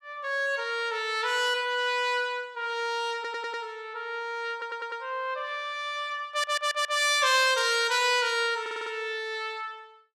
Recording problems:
audio stuttering; 4 times, first at 3 s

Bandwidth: 14.5 kHz